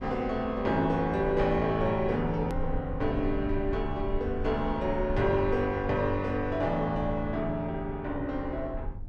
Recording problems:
low-frequency rumble; below 72 Hz, SNR 11 dB
click at an edit; at 2.5 s

